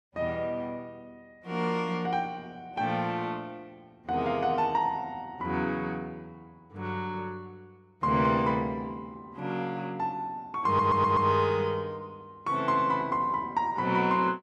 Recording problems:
stutter; at 11 s

